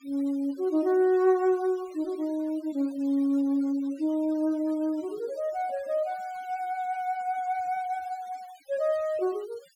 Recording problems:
denoising artefacts; signal-to-artefact ratio 26 dB

